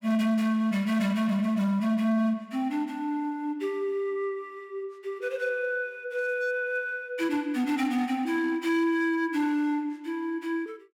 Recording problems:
distorted audio; hard clipping, signal-to-distortion ratio 11 dB

